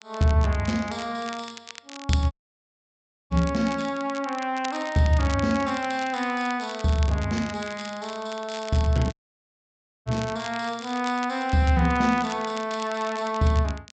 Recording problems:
treble missing; nothing above 8 kHz
crackling; vinyl, SNR 16 dB
dropout; at 2.5 s for 1 s and at 9 s for 1 s

